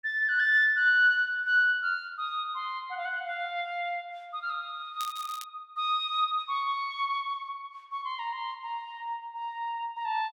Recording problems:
crackle; at 5 s; loose cable, SNR 17 dB

